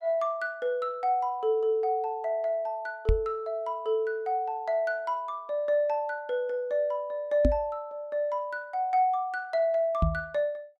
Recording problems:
microphone bump; at 3 s, at 7.5 s and at 10 s; peak +7 dB vs average level

